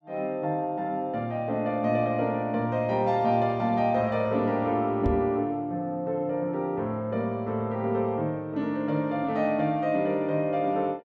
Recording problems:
microphone bump; at 5 s; peak +1 dB vs average level

